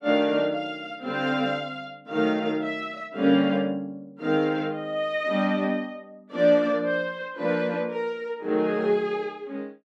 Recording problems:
none

